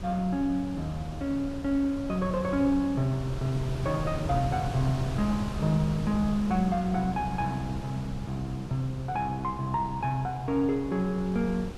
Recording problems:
wind on the microphone; below 300 Hz, SNR 9 dB

